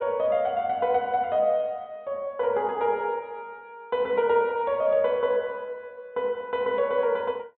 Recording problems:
low-pass filter; nothing above 4 kHz

